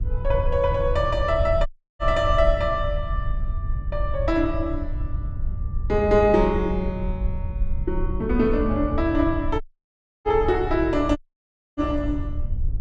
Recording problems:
low-frequency rumble; below 78 Hz, SNR 6 dB
audio cutting out; at 1.5 s, at 9.5 s for 0.5 s and at 11 s for 0.5 s

